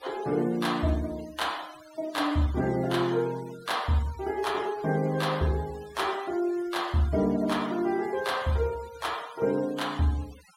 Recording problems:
noise reduction artefacts; signal-to-artefact ratio 19 dB

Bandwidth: 16 kHz